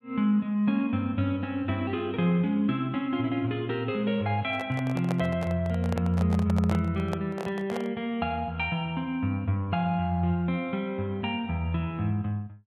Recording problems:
microphone handling noise; from 4.5 to 8 s; peak -3 dB vs average level

